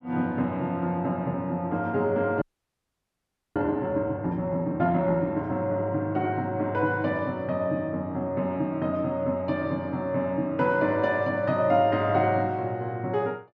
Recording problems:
frozen audio; at 2.5 s for 1 s

